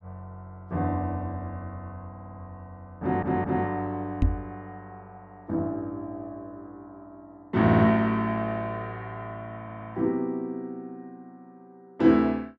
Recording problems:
audio stuttering; 4 times, first at 2 s
knock on the microphone; at 4 s; peak +7 dB vs average level

